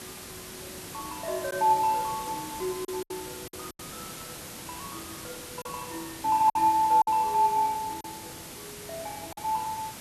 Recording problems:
hiss; slope -2 dB per octave, SNR 13 dB
lost packets; 5% of the sound replaced, filled with silence

